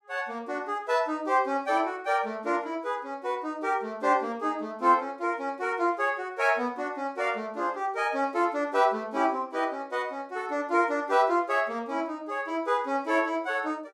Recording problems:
none

